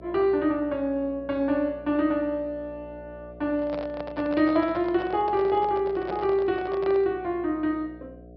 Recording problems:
low-pass filter; nothing above 5.5 kHz
hum; 60 Hz, harmonics up to 720 Hz, SNR 21 dB
handling noise; from 3.5 to 7 s; peak -7 dB vs average level

